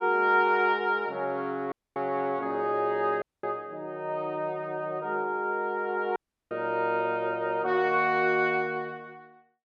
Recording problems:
audio cutting out; at 1.5 s, at 3 s and at 6 s

